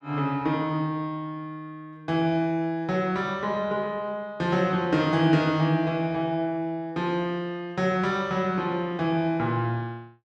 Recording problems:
none

